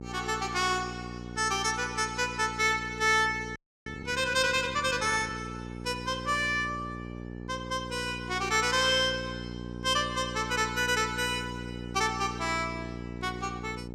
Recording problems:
hum; 60 Hz, harmonics up to 960 Hz, SNR 11 dB
audio freezing; at 3.5 s

